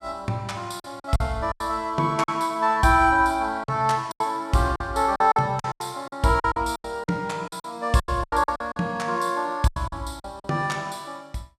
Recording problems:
packet loss; 12% of the sound replaced, filled with silence

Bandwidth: 15 kHz